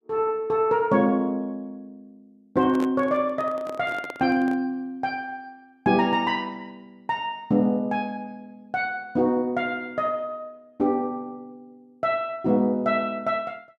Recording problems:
handling noise; from 2.5 to 4.5 s; peak -6 dB vs average level

